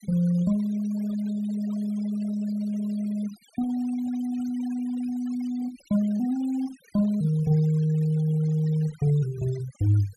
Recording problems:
denoising artefacts; signal-to-artefact ratio 21 dB

